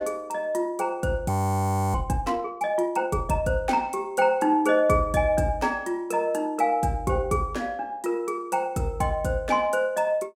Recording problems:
audio freezing; at 1.5 s for 0.5 s

